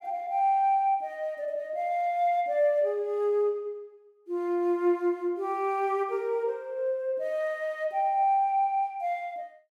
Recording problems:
none

